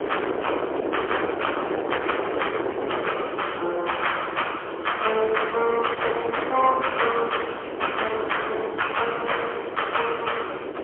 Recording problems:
telephone audio; 300 Hz to 3.3 kHz, AMR-NB, then MP3
distortion; soft clipping, signal-to-distortion ratio 9 dB
background hiss; SNR 25 dB
wind on the microphone; below 980 Hz, SNR 5 dB

